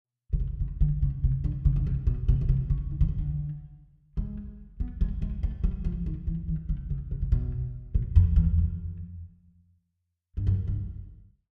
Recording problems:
none

